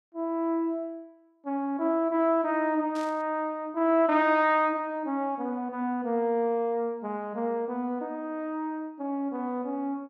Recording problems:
static burst; at 3 s; peak -14 dB vs average level

